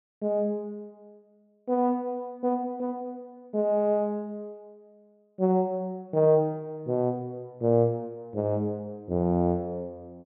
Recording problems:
treble missing; nothing above 4 kHz

